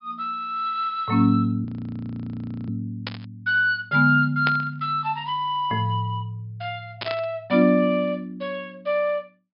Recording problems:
treble cut off; nothing above 5.5 kHz
audio freezing; at 1.5 s for 1 s
burst of static; at 3 s, at 4.5 s and at 7 s; peak 0 dB vs average level

